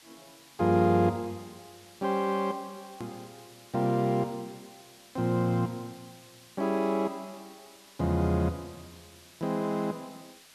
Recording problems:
hiss; slope +1 dB per octave, SNR 23 dB
click at an edit; at 3 s

